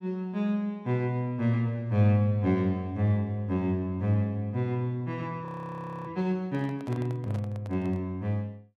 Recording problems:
audio freezing; at 5.5 s for 0.5 s
microphone handling noise; from 6.5 to 8 s; peak -10 dB vs average level

